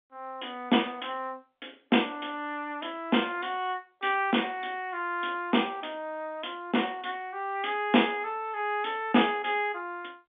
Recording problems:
phone line; 190 Hz to 3.6 kHz, G.711

